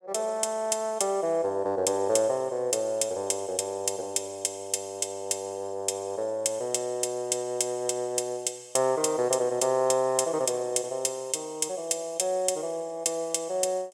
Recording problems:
none

